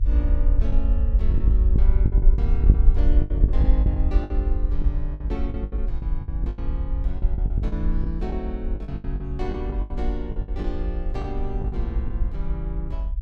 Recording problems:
rumble; below 58 Hz, SNR -9 dB
lost packets; 14% of the sound replaced, filled with the last packet

